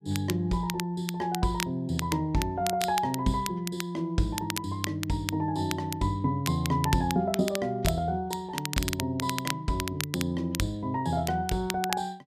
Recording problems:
crackling; vinyl, SNR 7 dB

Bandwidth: 14.5 kHz